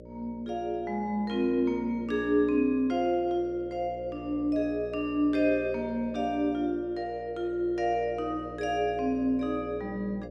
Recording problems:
hum; 60 Hz, harmonics up to 600 Hz, SNR 15 dB

